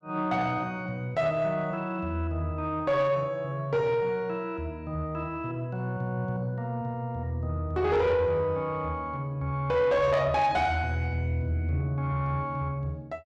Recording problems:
distorted audio; soft clipping, signal-to-distortion ratio 11 dB

